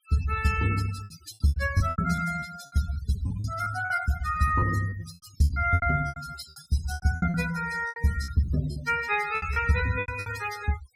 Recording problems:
noise reduction artefacts; signal-to-artefact ratio 12 dB
lost packets; 15% of the sound replaced, filled with repeated pitch periods

